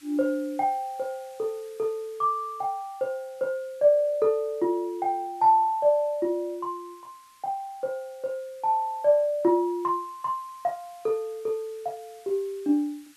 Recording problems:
background hiss; SNR 28 dB

